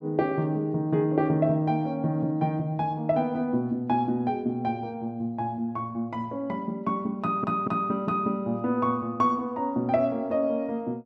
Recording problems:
audio stuttering; at 7 s

